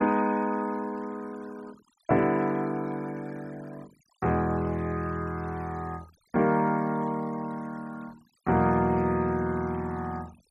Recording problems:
denoising artefacts; signal-to-artefact ratio 23 dB

